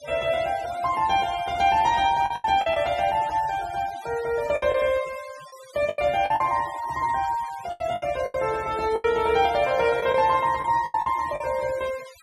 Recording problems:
noise reduction artefacts; signal-to-artefact ratio 17 dB
packet loss; 8% of the sound replaced, filled with the last packet

